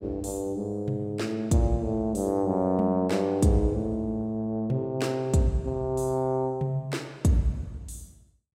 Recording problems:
none

